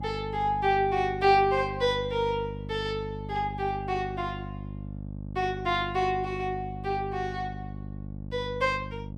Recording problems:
hum; 50 Hz, harmonics up to 600 Hz, SNR 10 dB

